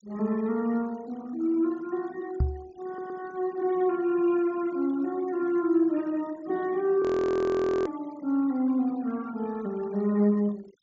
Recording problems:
treble missing; nothing above 7.4 kHz
noise reduction artefacts; signal-to-artefact ratio 24 dB
microphone thump; at 2.5 s; peak +5 dB vs average level
audio stuttering; at 3 s
frozen audio; at 7 s for 1 s

